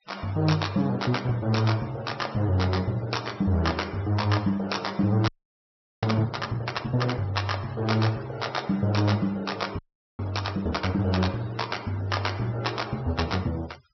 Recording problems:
treble missing; nothing above 5.7 kHz
denoising artefacts; signal-to-artefact ratio 22 dB
audio freezing; at 5.5 s for 1 s and at 10 s

